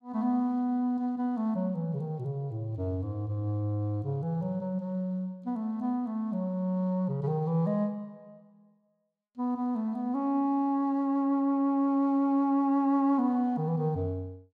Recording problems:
none

